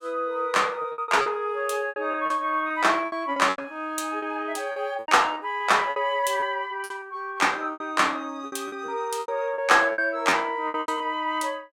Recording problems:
lost packets; 13% of the sound replaced, filled with repeated pitch periods

